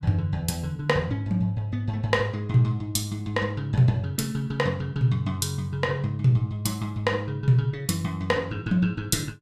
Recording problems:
none

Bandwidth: 14.5 kHz